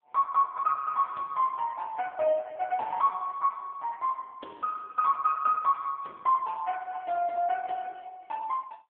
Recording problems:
telephone audio; 320 Hz to 2.2 kHz, AMR-NB

